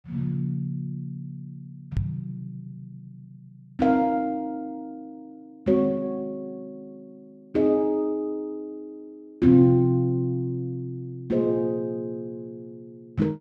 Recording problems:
microphone bump; at 2 s; peak +1 dB vs average level

